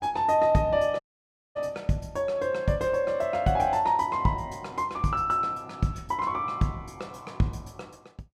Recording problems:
dropout; at 1 s for 0.5 s

